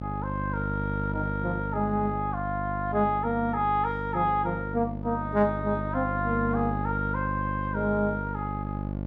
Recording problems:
electrical hum; 50 Hz, harmonics up to 900 Hz, SNR 5 dB

